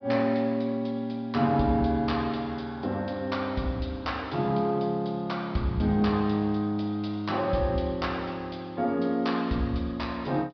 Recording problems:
low-pass filter; nothing above 5.5 kHz

